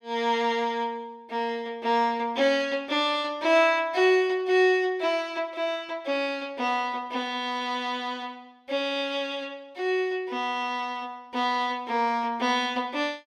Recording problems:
none

